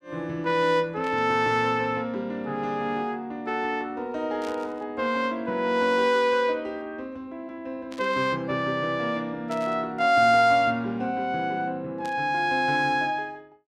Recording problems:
burst of static; 5 times, first at 1 s; peak -13 dB vs average level

